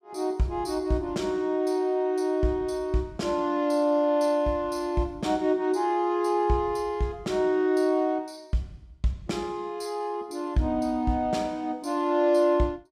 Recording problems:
none

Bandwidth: 15.5 kHz